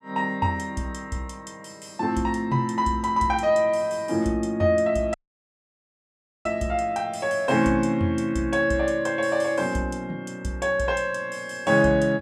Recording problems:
dropout; at 5 s for 1.5 s

